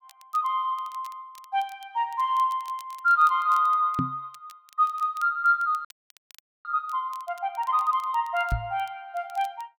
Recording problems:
crackling; vinyl, SNR 27 dB
knock on the microphone; at 4 s and at 8.5 s; peak +2 dB vs average level
frozen audio; at 6 s for 1 s

